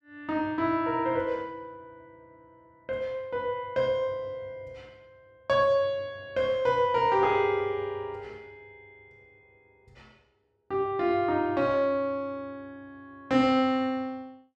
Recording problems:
none

